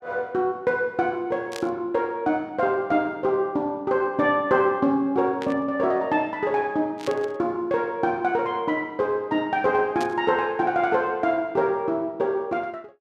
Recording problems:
burst of static; 4 times, first at 1.5 s; peak -7 dB vs average level

